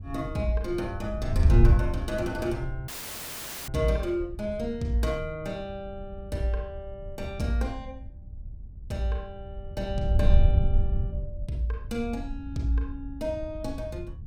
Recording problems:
wind on the microphone; below 80 Hz, SNR 0 dB
audio cutting out; at 3 s for 1 s; filled with static

